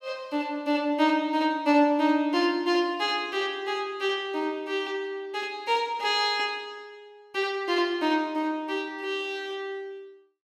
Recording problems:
none

